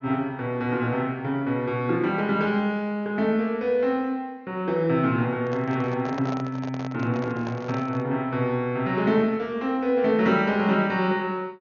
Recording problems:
treble cut off; nothing above 6.7 kHz
handling noise; from 5.5 to 8 s; peak -6 dB vs average level

